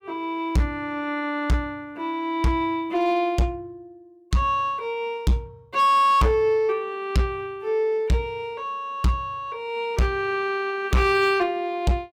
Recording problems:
distortion; hard clipping, signal-to-distortion ratio 11 dB

